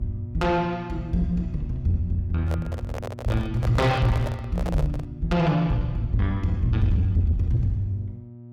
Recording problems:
distorted audio; soft clipping, signal-to-distortion ratio 11 dB
mains hum; 60 Hz, harmonics up to 600 Hz, SNR 16 dB
handling noise; from 2.5 to 5 s; peak -3 dB vs average level

